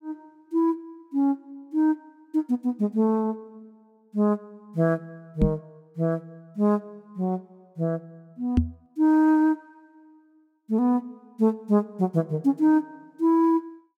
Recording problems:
knock on the microphone; at 5.5 s and at 8.5 s; peak +8 dB vs average level

